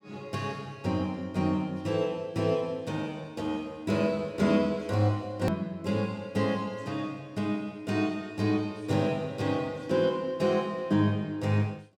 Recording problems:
click at an edit; at 5.5 s

